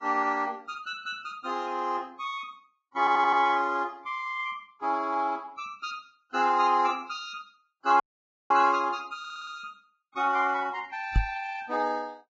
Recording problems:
codec artefacts; Vorbis, log-spectral distance 2 dB
stutter; at 3 s and at 9 s
dropout; at 8 s for 0.5 s
microphone thump; at 11 s; peak +6 dB vs average level

